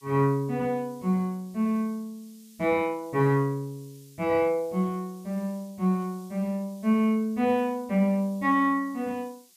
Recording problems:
background hiss; slope +6 dB per octave, SNR 28 dB

